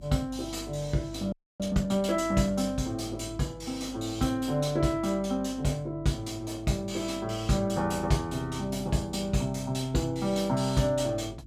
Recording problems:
electrical hum; 50 Hz, harmonics up to 350 Hz, SNR 18 dB
audio freezing; at 1.5 s

